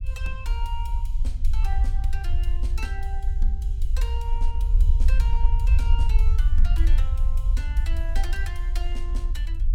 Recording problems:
rumble; below 54 Hz, SNR -14 dB

